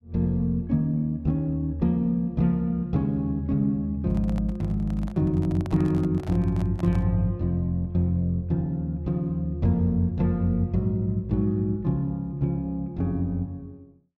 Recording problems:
microphone handling noise; from 4 to 7 s; peak -10 dB vs average level

